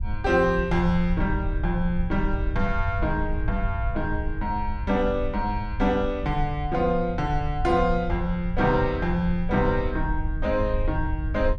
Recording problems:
low-frequency rumble; below 74 Hz, SNR 6 dB

